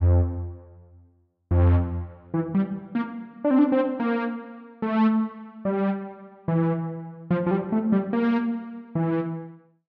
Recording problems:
none

